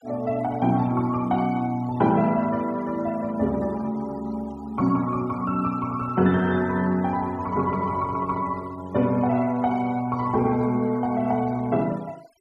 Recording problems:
denoising artefacts; signal-to-artefact ratio 24 dB

